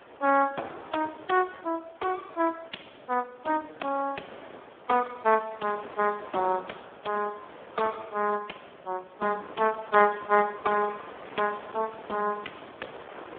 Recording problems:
telephone audio; 280 Hz to 2.1 kHz, Speex
wind on the microphone; below 1.5 kHz, SNR 18 dB

